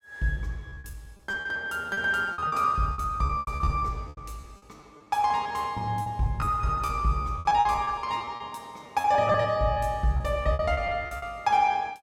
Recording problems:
packet loss; 15% of the sound replaced, filled with repeated pitch periods

